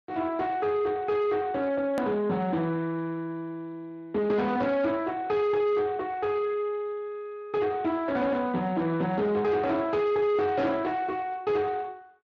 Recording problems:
lossy compression; Speex, log-spectral distance 2 dB, nothing above 13.1 kHz
distortion; soft clipping, signal-to-distortion ratio 9 dB
click at an edit; at 2 s

